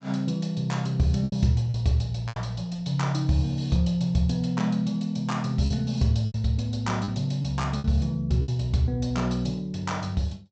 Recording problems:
treble cut off; nothing above 8 kHz
lost packets; 5% of the sound replaced, filled with repeated pitch periods

